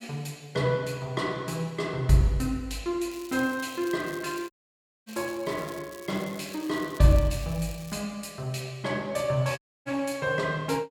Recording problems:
crackle; from 3 to 8 s; loose cable, SNR 19 dB
dropout; at 4.5 s for 0.5 s and at 9.5 s

